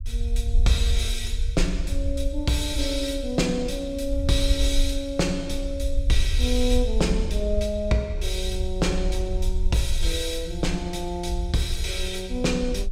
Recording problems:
low-frequency rumble; below 60 Hz, SNR 2 dB

